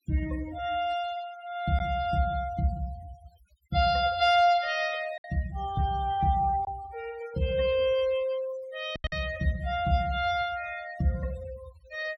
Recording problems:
noise reduction artefacts; signal-to-artefact ratio 19 dB
lost packets; 1.9% of the sound replaced, filled with silence

